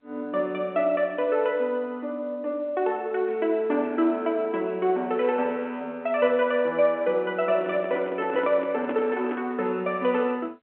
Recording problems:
telephone audio; 220 Hz to 3.4 kHz, G.711
microphone handling noise; from 7.5 to 9.5 s; peak -3 dB vs average level

